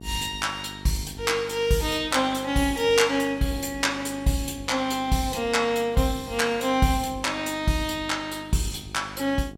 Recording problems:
electrical hum; 50 Hz, harmonics up to 1.1 kHz, SNR 19 dB

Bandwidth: 16.5 kHz